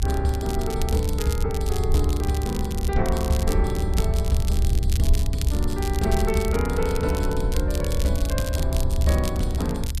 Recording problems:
rumble; below 72 Hz, SNR -1 dB
crackle; vinyl, SNR 10 dB

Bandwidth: 14 kHz